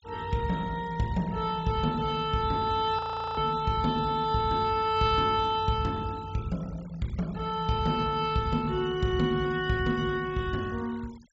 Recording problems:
low-pass filter; nothing above 8 kHz
noise reduction artefacts; signal-to-artefact ratio 23 dB
audio freezing; at 3 s

